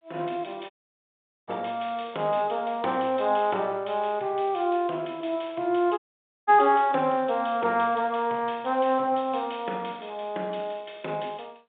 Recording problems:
phone line; 300 Hz to 3.6 kHz, G.726
audio cutting out; at 0.5 s for 1 s and at 6 s

